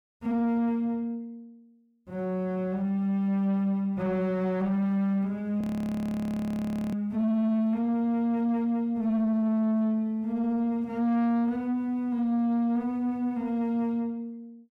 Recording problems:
distorted audio; soft clipping, signal-to-distortion ratio 11 dB
audio freezing; at 5.5 s for 1.5 s

